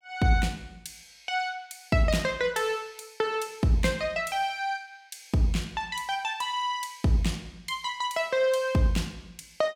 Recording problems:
none

